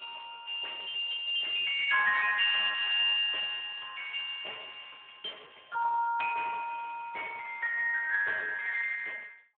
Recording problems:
phone line; 390 Hz to 3.5 kHz, Speex

